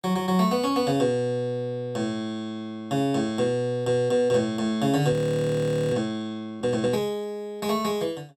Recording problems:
frozen audio; at 5 s for 1 s

